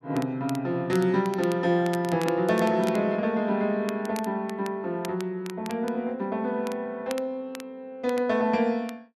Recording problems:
crackle; vinyl, SNR 18 dB

